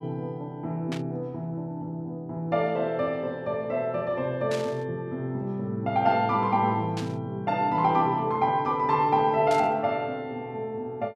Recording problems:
static burst; 4 times, first at 1 s; peak -7 dB vs average level

